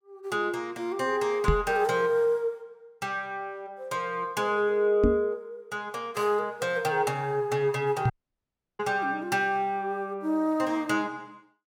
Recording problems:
microphone thump; at 1.5 s, at 5 s and at 8 s; peak +6 dB vs average level
audio cutting out; at 8 s for 0.5 s

